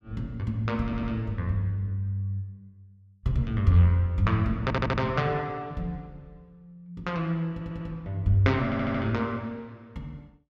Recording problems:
audio stuttering; 4 times, first at 1 s

